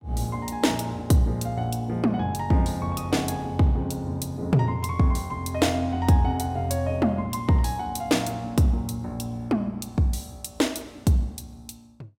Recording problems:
none

